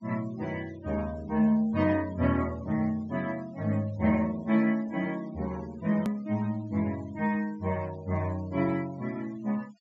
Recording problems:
treble missing; nothing above 8 kHz
denoising artefacts; signal-to-artefact ratio 23 dB
edit click; at 6 s

